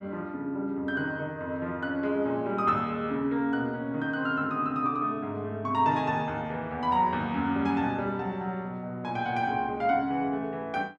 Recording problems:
none

